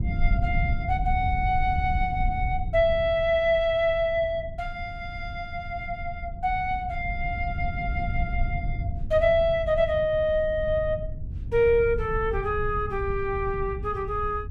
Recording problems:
rumble; below 92 Hz, SNR 7 dB

